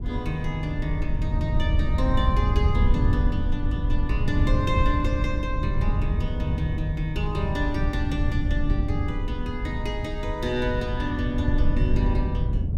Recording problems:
wind on the microphone; below 100 Hz, SNR -4 dB

